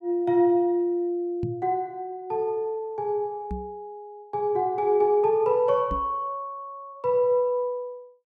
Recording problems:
microphone thump; at 1.5 s, at 3.5 s and at 6 s; peak -3 dB vs average level

